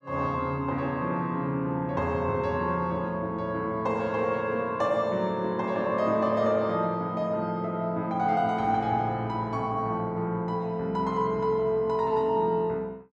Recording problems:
none

